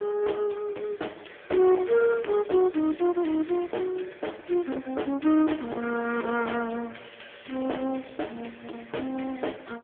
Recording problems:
phone line; 260 Hz to 3.4 kHz, AMR-NB
distorted audio; hard clipping, uneven, signal-to-distortion ratio 10 dB

